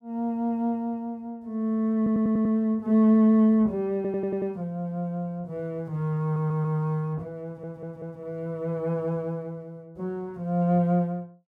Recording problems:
stutter; 4 times, first at 2 s

